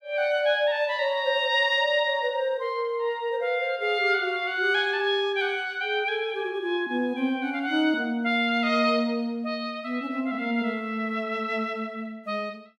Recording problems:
none

